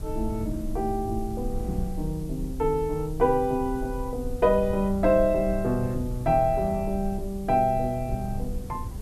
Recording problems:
background hiss; SNR 25 dB
low-frequency rumble; below 82 Hz, SNR 10 dB

